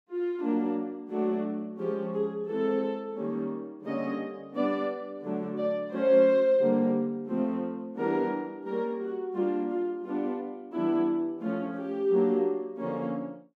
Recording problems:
none

